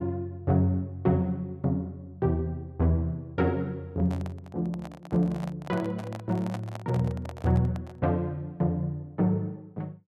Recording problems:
microphone handling noise; from 4 to 8 s; peak -5 dB vs average level

